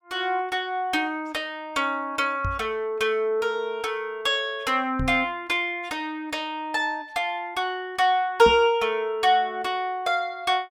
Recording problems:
microphone bump; at 2.5 s, at 5 s and at 8.5 s; peak -2 dB vs average level

